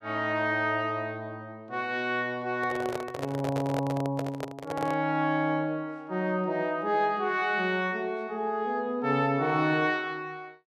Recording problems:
microphone handling noise; from 2.5 to 5 s; peak -1 dB vs average level

